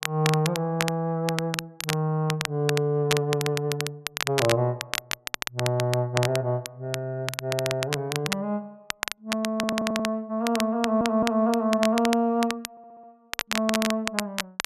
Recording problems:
crackling; vinyl, SNR 5 dB
stutter; at 9.5 s, at 11 s and at 13 s

